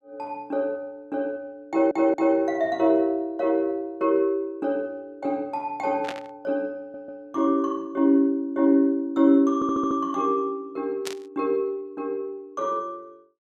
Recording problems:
stutter; at 1.5 s, at 7 s and at 9.5 s
static burst; at 6 s and at 11 s; peak -4 dB vs average level

